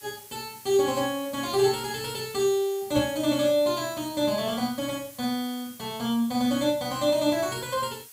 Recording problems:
hiss; slope +2 dB per octave, SNR 18 dB
knock on the microphone; at 3 s; peak -4 dB vs average level

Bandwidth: 15.5 kHz